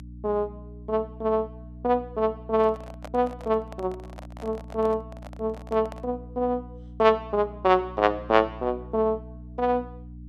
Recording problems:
hum; 60 Hz, harmonics up to 300 Hz, SNR 16 dB
handling noise; from 2.5 to 6 s; peak -9 dB vs average level

